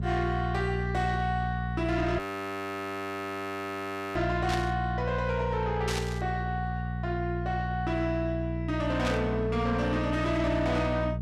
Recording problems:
distortion; soft clipping, signal-to-distortion ratio 10 dB
electrical hum; 60 Hz, harmonics up to 420 Hz, SNR 3 dB
audio freezing; at 2 s for 2 s
static burst; at 4.5 s, at 6 s and at 9 s; peak 0 dB vs average level

